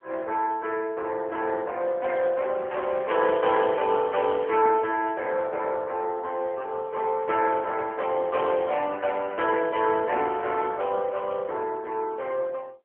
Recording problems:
telephone audio; 340 Hz to 3.7 kHz, AMR-NB

